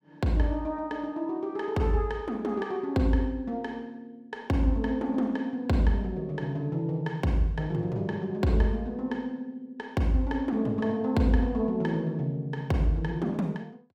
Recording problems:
none

